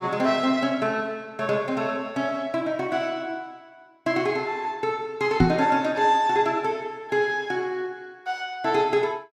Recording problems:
knock on the microphone; at 5.5 s; peak +8 dB vs average level

